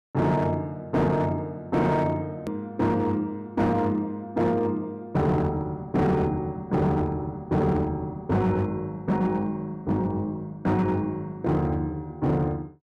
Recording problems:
distorted audio; hard clipping, signal-to-distortion ratio 11 dB
hard cut with a click; at 2.5 s

